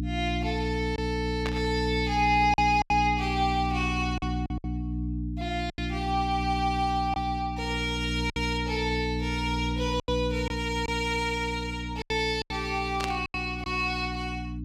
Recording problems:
hum; 60 Hz, harmonics up to 300 Hz, SNR 4 dB
lost packets; 6% of the sound replaced, filled with silence
static burst; at 1.5 s and at 13 s; peak 0 dB vs average level

